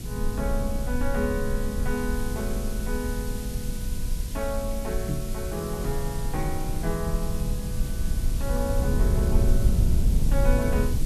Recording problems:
hiss; slope +4 dB per octave, SNR 9 dB
rumble; below 76 Hz, SNR -3 dB
microphone thump; at 5 s; peak +5 dB vs average level

